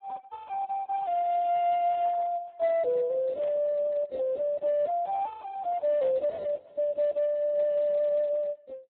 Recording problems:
phone line; 900 Hz to 2.3 kHz, Speex
burst of static; at 2 s, at 3.5 s and at 6 s; peak -20 dB vs average level

